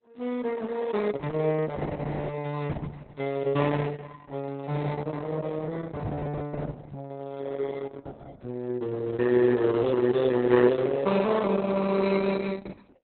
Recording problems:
lossy compression; Opus, log-spectral distance 3 dB, nothing above 4.1 kHz
microphone bump; at 6 s; peak 0 dB vs average level

